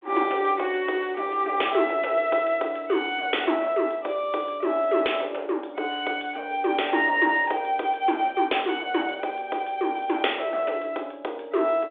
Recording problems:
phone line; 300 Hz to 3.6 kHz, G.726

